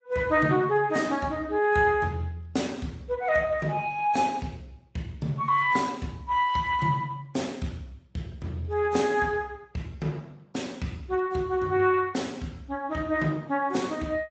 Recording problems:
lossy compression; AAC, then Speex, log-spectral distance 3 dB, nothing above 7.8 kHz

